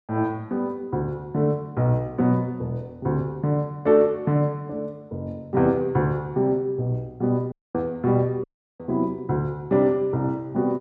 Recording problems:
audio cutting out; at 7.5 s and at 8.5 s

